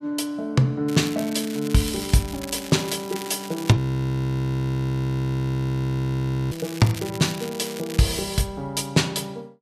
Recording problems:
crackling; from 1 to 3.5 s and from 6.5 to 8 s; loose cable, SNR 13 dB
audio freezing; at 4 s for 2.5 s

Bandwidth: 14.5 kHz